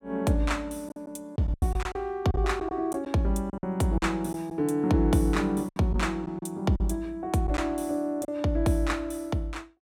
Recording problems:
lost packets; 7% of the sound replaced, filled with silence

